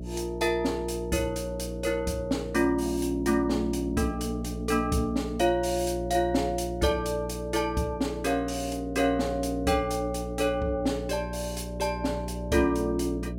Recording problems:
hum; 60 Hz, harmonics up to 660 Hz, SNR 9 dB

